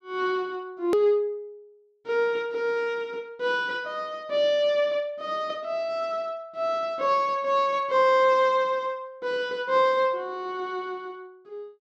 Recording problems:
click at an edit; at 1 s

